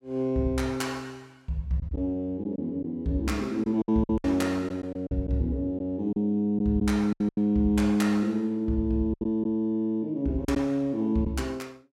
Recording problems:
lost packets; 6% of the sound replaced, filled with silence

